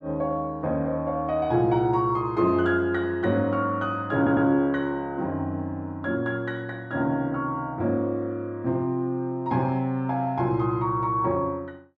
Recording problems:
stutter; at 4 s

